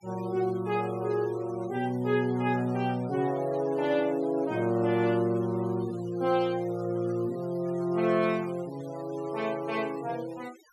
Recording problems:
noise reduction artefacts; signal-to-artefact ratio 22 dB

